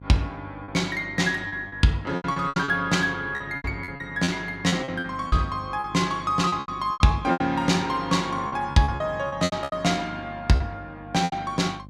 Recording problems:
hum; 50 Hz, harmonics up to 600 Hz, SNR 19 dB
packet loss; 13% of the sound replaced, filled with repeated pitch periods

